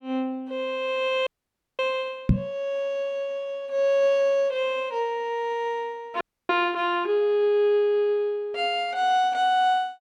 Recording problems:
frozen audio; at 1.5 s for 0.5 s and at 6 s
microphone thump; at 2.5 s; peak +9 dB vs average level

